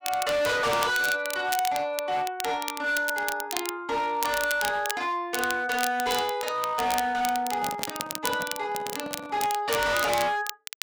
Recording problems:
distorted audio; hard clipping, uneven, signal-to-distortion ratio 7 dB
crackle; vinyl, SNR 8 dB
handling noise; from 7.5 to 9.5 s; peak -8 dB vs average level

